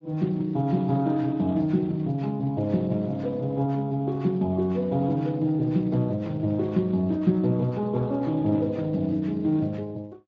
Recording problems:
codec artefacts; Speex, log-spectral distance 2 dB

